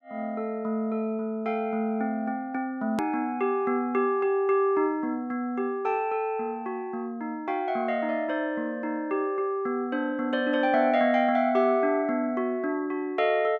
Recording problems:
hard cut with a click; at 3 s

